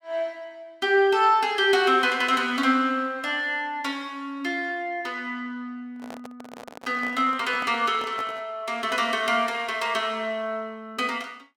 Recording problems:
handling noise; from 6 to 8.5 s; peak -9 dB vs average level

